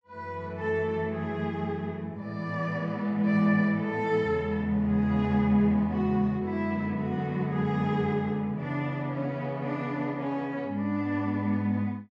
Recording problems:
none

